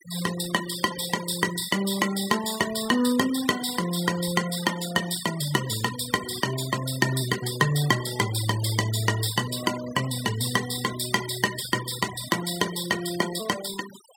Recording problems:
denoising artefacts; signal-to-artefact ratio 12 dB

